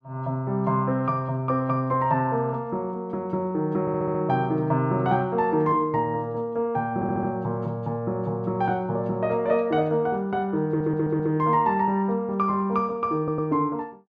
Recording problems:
audio stuttering; 4 times, first at 4 s

